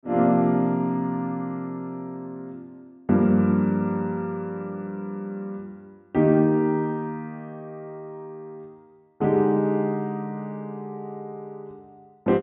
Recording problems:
low-pass filter; nothing above 3.7 kHz

